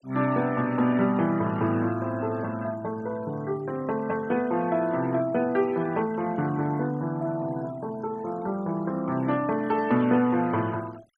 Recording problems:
noise reduction artefacts; signal-to-artefact ratio 23 dB

